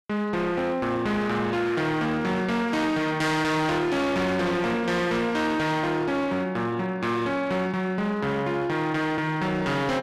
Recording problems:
distortion; hard clipping, signal-to-distortion ratio 8 dB

